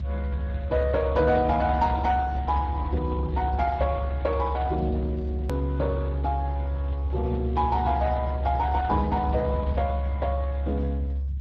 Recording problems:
lossy codec; Speex, log-spectral distance 2 dB
low-frequency rumble; below 72 Hz, strongest tone 68 Hz, SNR 3 dB
hard cut with a click; at 5.5 s

